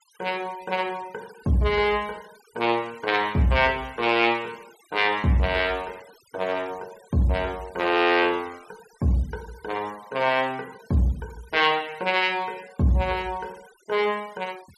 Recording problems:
denoising artefacts; signal-to-artefact ratio 24 dB

